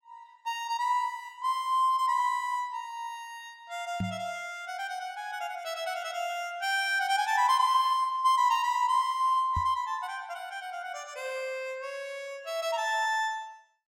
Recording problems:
microphone bump; at 4 s and at 9.5 s; peak 0 dB vs average level

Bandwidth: 16 kHz